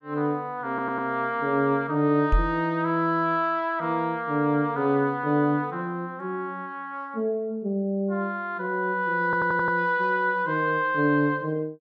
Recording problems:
stutter; at 0.5 s and at 9 s
microphone thump; at 2.5 s; peak +5 dB vs average level

